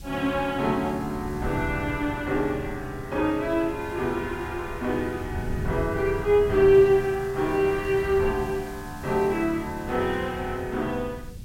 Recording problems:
background hiss; slope +3 dB per octave, SNR 25 dB
wind on the microphone; below 160 Hz, SNR 13 dB

